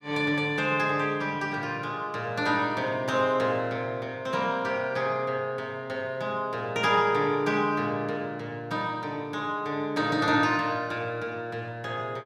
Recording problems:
none

